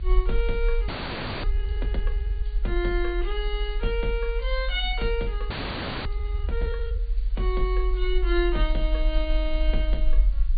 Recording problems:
low-pass filter; nothing above 4.7 kHz
hiss; SNR 27 dB
low-frequency rumble; below 46 Hz, SNR -2 dB
audio freezing; at 1 s for 0.5 s and at 5.5 s for 0.5 s

